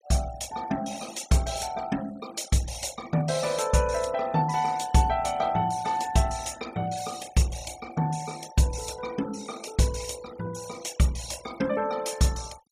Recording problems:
denoising artefacts; signal-to-artefact ratio 17 dB

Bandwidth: 14.5 kHz